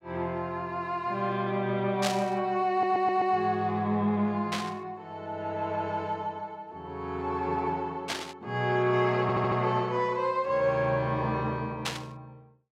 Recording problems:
burst of static; 4 times, first at 2 s; peak +2 dB vs average level
audio stuttering; at 2.5 s and at 9 s

